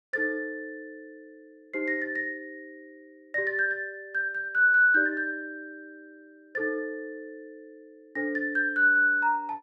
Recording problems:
none

